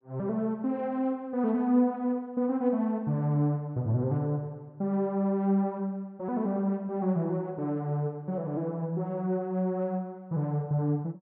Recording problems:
none

